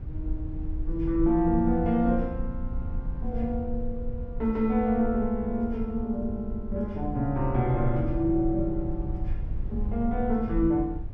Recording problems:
rumble; below 72 Hz, SNR 8 dB

